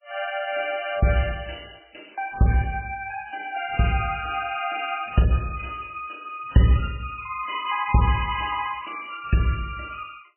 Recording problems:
lossy compression; MP3, log-spectral distance 9 dB, nothing above 2.5 kHz

